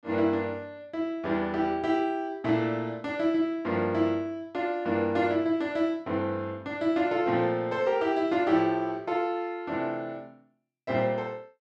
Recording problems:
none

